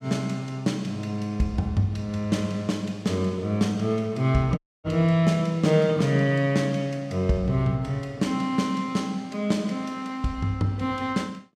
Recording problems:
dropout; at 4.5 s

